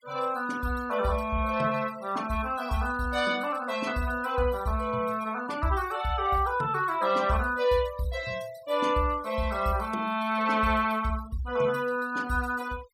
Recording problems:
noise reduction artefacts; signal-to-artefact ratio 20 dB

